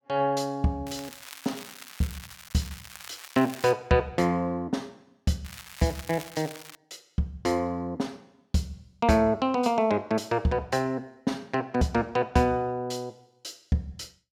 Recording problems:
crackling; from 1 to 3.5 s and from 5.5 to 7 s; loose cable, SNR 15 dB

